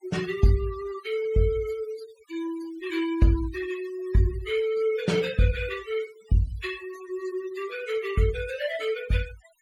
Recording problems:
denoising artefacts; signal-to-artefact ratio 16 dB

